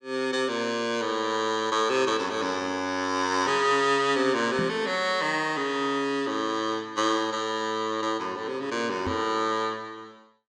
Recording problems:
knock on the microphone; at 4.5 s and at 9 s; peak -3 dB vs average level

